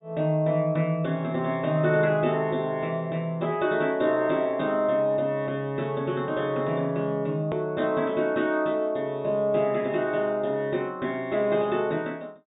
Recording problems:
treble missing; nothing above 4 kHz
click at an edit; at 7.5 s

